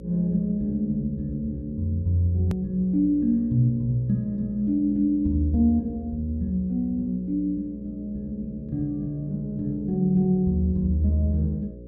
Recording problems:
hum; 60 Hz, harmonics up to 540 Hz, SNR 17 dB
hard cut with a click; at 2.5 s

